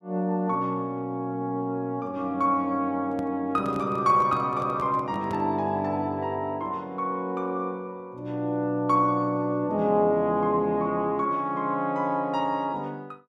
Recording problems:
microphone handling noise; from 3 to 5.5 s; peak -6 dB vs average level

